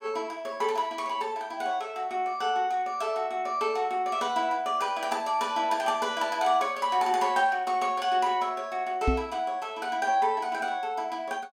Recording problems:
knock on the microphone; at 9 s; peak +5 dB vs average level

